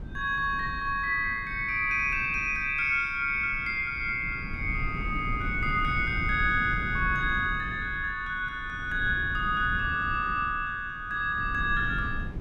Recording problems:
wind on the microphone; below 160 Hz, SNR 11 dB

